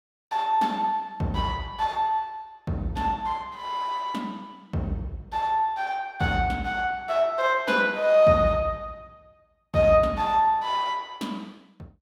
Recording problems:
none

